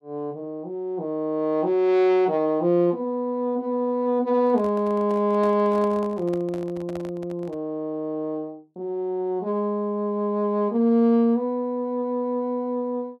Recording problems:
handling noise; from 4.5 to 7.5 s; peak -11 dB vs average level

